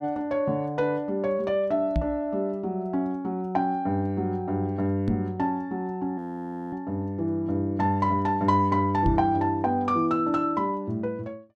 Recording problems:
microphone bump; at 2 s, at 5 s and at 9 s; peak +3 dB vs average level
frozen audio; at 6 s for 0.5 s

